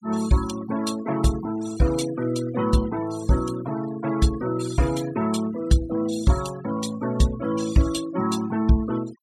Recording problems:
denoising artefacts; signal-to-artefact ratio 16 dB

